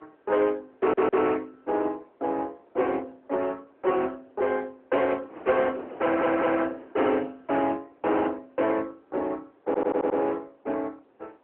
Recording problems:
telephone audio; 280 Hz to 3.2 kHz, AMR-NB
distortion; hard clipping, uneven, signal-to-distortion ratio 11 dB
wind noise; below 890 Hz, SNR 19 dB
audio stuttering; at 1 s, at 6 s and at 9.5 s

